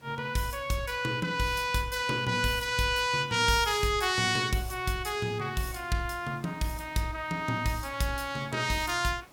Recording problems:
hiss; slope -4 dB per octave, SNR 27 dB

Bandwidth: 17 kHz